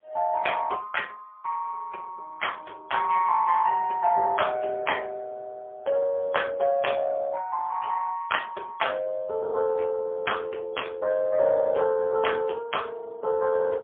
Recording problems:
telephone audio; 340 Hz to 3.4 kHz, AMR-NB, then MP3

